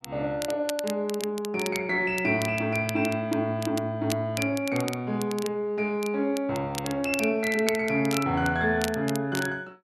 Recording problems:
crackle; vinyl, SNR 12 dB

